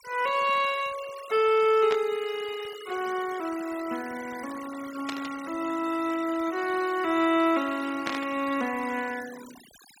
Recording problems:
denoising artefacts; signal-to-artefact ratio 16 dB
static burst; at 2 s, at 5 s and at 8 s; peak -1 dB vs average level

